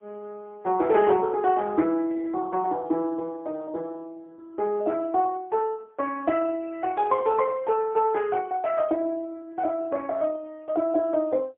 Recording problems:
telephone audio; 280 Hz to 3.4 kHz, AMR-NB, then MP3

